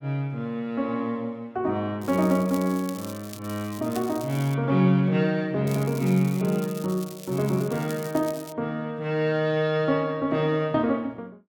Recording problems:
crackling; from 2 to 4.5 s and from 5.5 to 8.5 s; loose cable, SNR 17 dB

